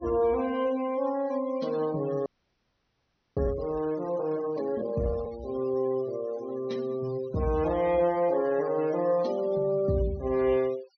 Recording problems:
treble cut off; nothing above 6.1 kHz
noise reduction artefacts; signal-to-artefact ratio 20 dB
frozen audio; at 2.5 s for 1 s

